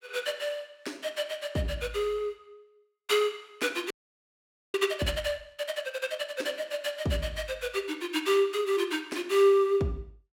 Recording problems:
frozen audio; at 4 s for 1 s

